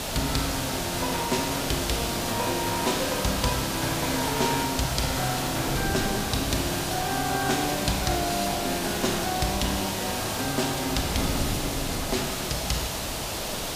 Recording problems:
background hiss; SNR 1 dB
wind noise; below 310 Hz, SNR 11 dB
crackling; vinyl, SNR 30 dB

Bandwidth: 15 kHz